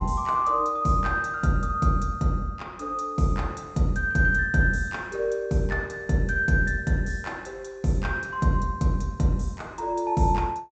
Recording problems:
treble missing; nothing above 8 kHz

